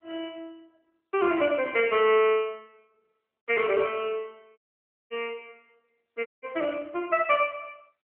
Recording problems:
telephone audio; 280 Hz to 3 kHz, AMR-NB
audio cutting out; at 4.5 s for 0.5 s and at 6.5 s

